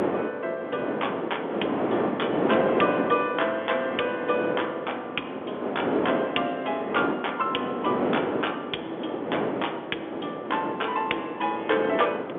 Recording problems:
telephone audio; 190 Hz to 3.5 kHz, G.711
wind noise; below 710 Hz, SNR 1 dB

